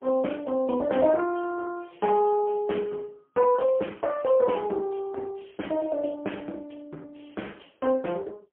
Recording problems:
phone line; 220 Hz to 3.2 kHz, AMR-NB, then MP3

